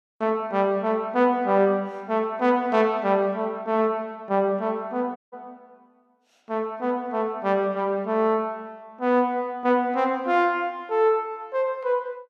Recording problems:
audio cutting out; at 5 s

